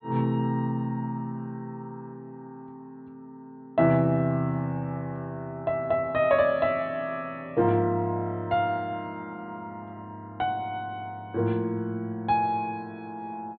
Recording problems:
treble missing; nothing above 4.3 kHz

